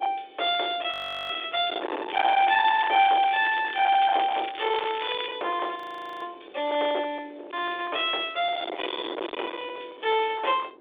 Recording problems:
telephone audio; 320 Hz to 3.6 kHz, G.726
distortion; hard clipping, uneven, signal-to-distortion ratio 10 dB
wind on the microphone; below 2.2 kHz, SNR 11 dB
frozen audio; at 1 s and at 6 s
crackle; from 2 to 5.5 s; loose cable, SNR 13 dB

